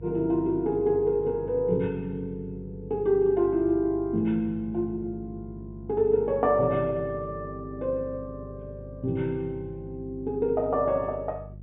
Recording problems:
treble cut off; nothing above 4 kHz
hum; 50 Hz, harmonics up to 400 Hz, SNR 16 dB

